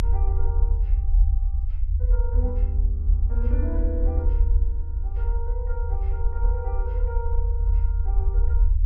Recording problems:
rumble; below 74 Hz, SNR -13 dB

